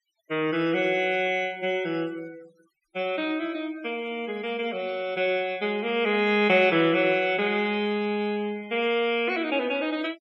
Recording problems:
denoising artefacts; signal-to-artefact ratio 23 dB

